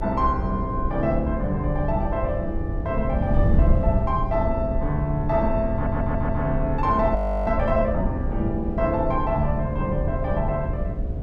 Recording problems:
electrical hum; 60 Hz, harmonics up to 720 Hz, SNR 11 dB
wind noise; below 100 Hz, SNR 3 dB
audio stuttering; at 5.5 s
frozen audio; at 7 s

